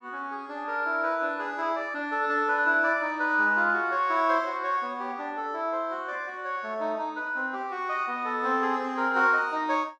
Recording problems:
none

